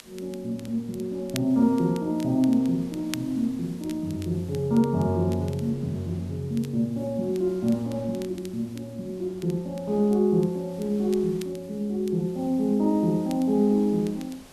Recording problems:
background hiss; slope 0 dB per octave, SNR 29 dB
wind noise; below 1.9 kHz, SNR 27 dB
crackling; vinyl, SNR 22 dB

